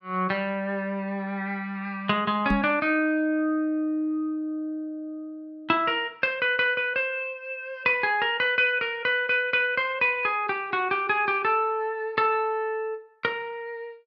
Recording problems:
knock on the microphone; at 2.5 s; peak +4 dB vs average level

